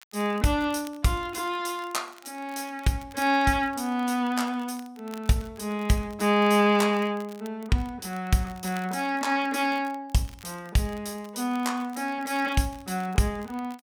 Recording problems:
crackle; vinyl, SNR 25 dB

